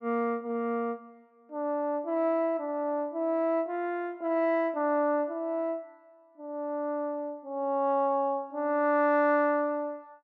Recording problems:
none

